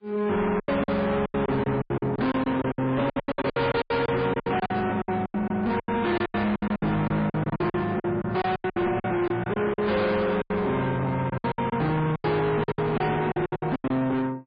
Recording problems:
lossy codec; MP3, log-spectral distance 2 dB, nothing above 4.6 kHz
distorted audio; soft clipping, signal-to-distortion ratio 6 dB
lost packets; 19% of the sound replaced, filled with silence

